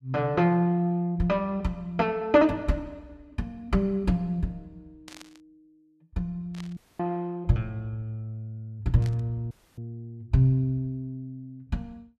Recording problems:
burst of static; at 5 s, at 6.5 s and at 9 s; peak -13 dB vs average level
audio cutting out; at 7 s and at 9.5 s

